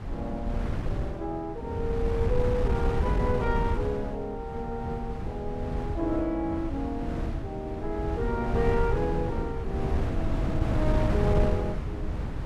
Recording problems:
wind on the microphone; below 160 Hz, SNR -1 dB

